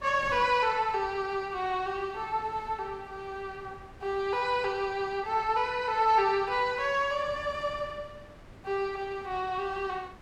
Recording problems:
wind noise; below 890 Hz, SNR 21 dB

